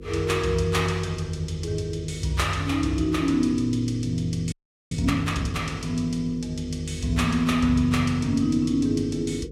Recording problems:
electrical hum; 50 Hz, harmonics up to 500 Hz, SNR 15 dB
audio freezing; at 4.5 s

